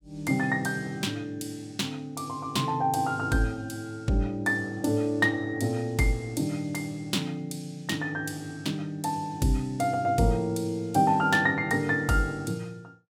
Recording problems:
none

